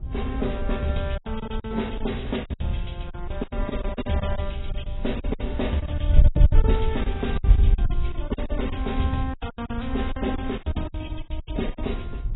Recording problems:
lossy codec; AAC, then AAC, log-spectral distance 4 dB, nothing above 3.8 kHz
hum; 60 Hz, harmonics up to 600 Hz, SNR 21 dB
wind on the microphone; below 70 Hz, SNR -2 dB
packet loss; 16% of the sound replaced, filled with silence

